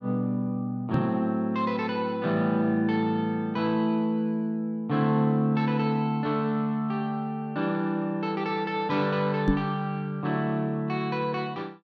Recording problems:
microphone bump; at 1 s and at 9.5 s; peak +6 dB vs average level

